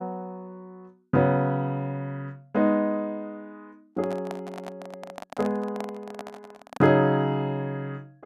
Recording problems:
handling noise; from 4 to 7 s; peak -6 dB vs average level

